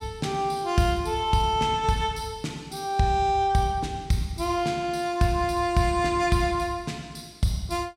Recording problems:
none

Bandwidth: 16 kHz